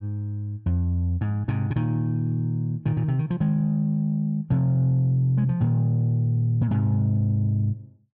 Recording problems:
none

